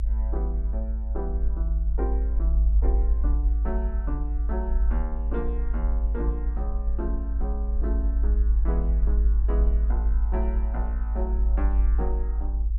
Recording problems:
low-frequency rumble; below 54 Hz, strongest tone 52 Hz, SNR -11 dB

